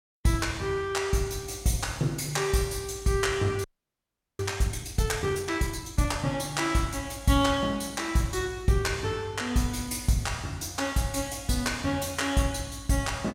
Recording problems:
frozen audio; at 3.5 s for 0.5 s

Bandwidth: 17.5 kHz